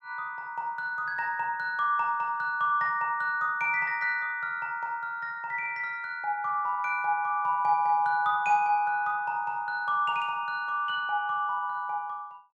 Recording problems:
none

